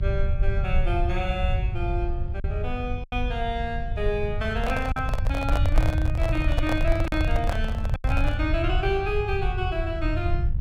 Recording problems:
hum; 50 Hz, harmonics up to 700 Hz, SNR 10 dB
low-frequency rumble; below 84 Hz, SNR -2 dB
lost packets; 3% of the sound replaced, filled with silence
microphone handling noise; from 4.5 to 8.5 s; peak +3 dB vs average level

